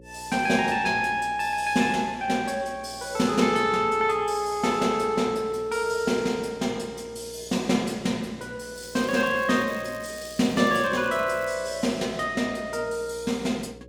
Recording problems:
hum; 60 Hz, harmonics up to 540 Hz, SNR 24 dB
crackle; from 9 to 12 s; loose cable, SNR 22 dB

